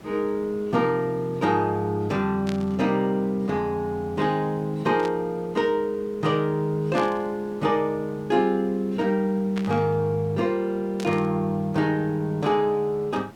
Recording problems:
hiss; slope -6 dB per octave, SNR 22 dB
burst of static; 5 times, first at 2.5 s; peak -7 dB vs average level

